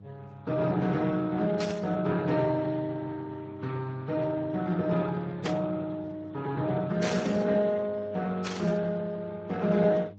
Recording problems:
lossy codec; Vorbis, then Speex, log-spectral distance 3 dB
hum; 50 Hz, harmonics up to 800 Hz, SNR 20 dB
burst of static; 4 times, first at 1.5 s; peak -1 dB vs average level

